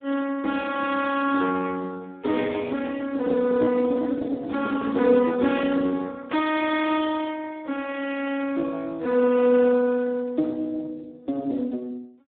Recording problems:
telephone audio; 220 Hz to 2.6 kHz, Speex

